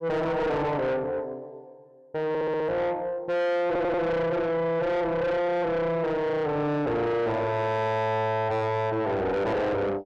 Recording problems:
distorted audio; soft clipping, signal-to-distortion ratio 6 dB
audio stuttering; at 2.5 s and at 3.5 s

